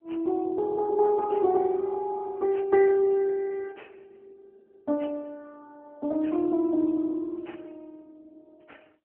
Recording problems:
telephone audio; 130 Hz to 2.5 kHz, AMR-NB

